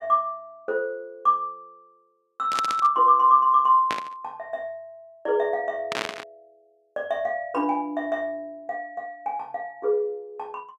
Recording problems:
static burst; at 2.5 s, at 4 s and at 6 s; peak -1 dB vs average level

